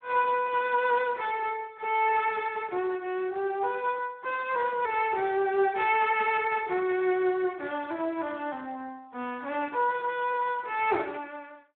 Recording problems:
phone line; 220 Hz to 3.4 kHz, Speex

